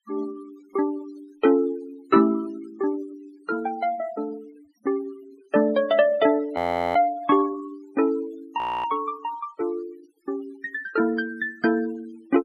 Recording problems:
noise reduction artefacts; signal-to-artefact ratio 22 dB
audio freezing; at 6.5 s and at 8.5 s

